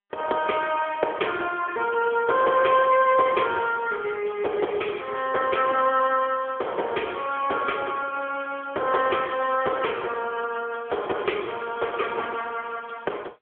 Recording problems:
phone line; 340 Hz to 3.3 kHz, AMR-NB

